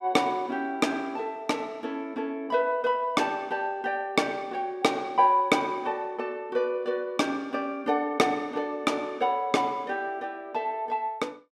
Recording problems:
none

